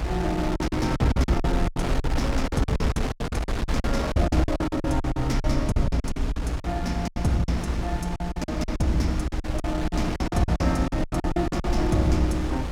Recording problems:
electrical hum; 60 Hz, harmonics up to 300 Hz, SNR 13 dB
low-frequency rumble; below 68 Hz, SNR 6 dB
wind noise; below 930 Hz, SNR 5 dB
packet loss; 18% of the sound replaced, filled with silence

